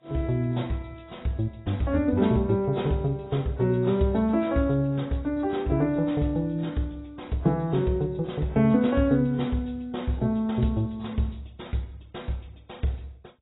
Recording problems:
lossy codec; AAC, log-spectral distance 3 dB, nothing above 3.8 kHz

